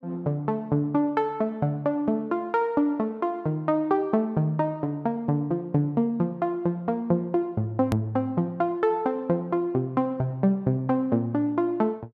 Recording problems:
edit click; at 8 s

